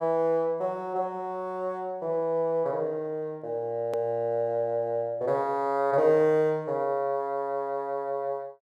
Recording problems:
click at an edit; at 4 s

